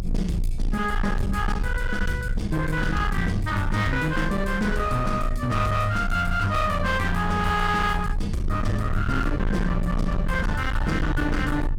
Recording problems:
distortion; hard clipping, uneven, signal-to-distortion ratio 8 dB
rumble; below 88 Hz, strongest tone 30 Hz, SNR 5 dB

